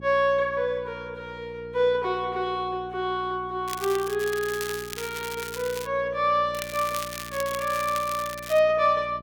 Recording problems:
electrical hum; 60 Hz, harmonics up to 840 Hz, SNR 19 dB
crackle; at 3.5 s, from 4 to 6 s and from 6.5 to 8.5 s; loose cable, SNR 11 dB

